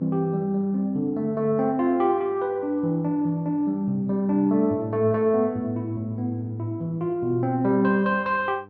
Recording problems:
mains hum; 50 Hz, harmonics up to 1.3 kHz, SNR 25 dB

